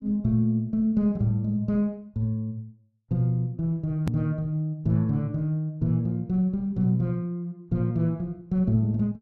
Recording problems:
edit click; at 4 s

